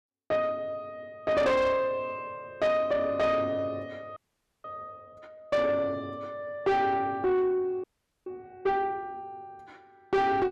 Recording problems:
distorted audio; soft clipping, signal-to-distortion ratio 8 dB
frozen audio; at 4 s and at 8 s

